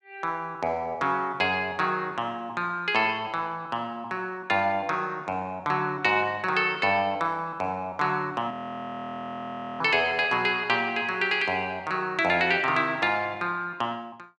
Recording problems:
frozen audio; at 8.5 s for 1.5 s

